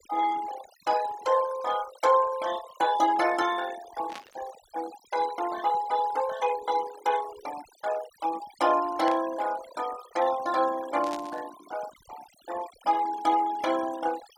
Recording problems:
denoising artefacts; signal-to-artefact ratio 15 dB
burst of static; at 4 s, at 9 s and at 11 s; peak -8 dB vs average level

